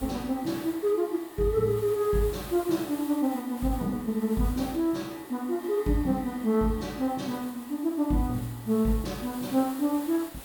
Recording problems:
hiss; slope -3 dB per octave, SNR 17 dB

